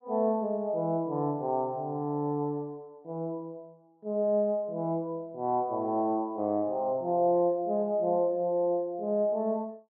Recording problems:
none

